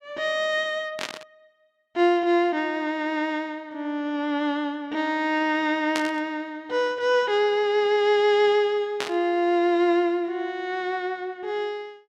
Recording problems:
burst of static; at 1 s, at 6 s and at 9 s; peak -1 dB vs average level

